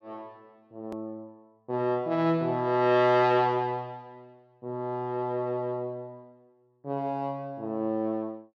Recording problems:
edit click; at 1 s

